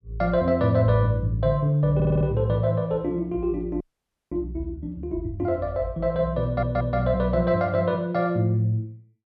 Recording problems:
stutter; at 2 s and at 6.5 s
frozen audio; at 4 s for 0.5 s

